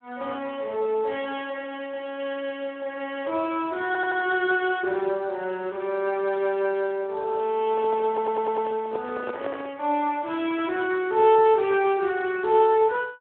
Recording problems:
telephone audio; 300 Hz to 3.6 kHz, Speex
audio stuttering; at 4 s and at 8 s
microphone handling noise; from 7.5 to 9.5 s; peak -5 dB vs average level

